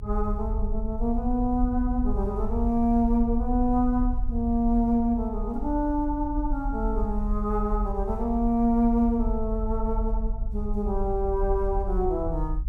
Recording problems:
low-frequency rumble; below 52 Hz, strongest tone 38 Hz, SNR 5 dB

